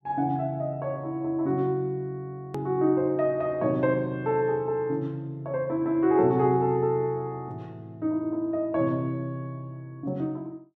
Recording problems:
hard cut with a click; at 2.5 s

